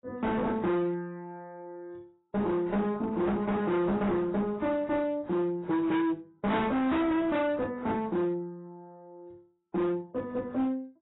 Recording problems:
codec artefacts; AAC, then AAC, log-spectral distance 2 dB, nothing above 3.8 kHz
distorted audio; hard clipping, uneven, signal-to-distortion ratio 6 dB

